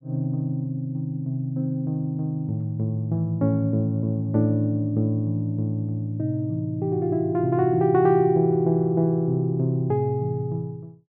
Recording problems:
none

